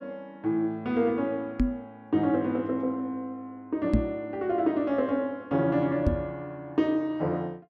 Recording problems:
microphone thump; at 1.5 s, at 4 s and at 6 s; peak +8 dB vs average level

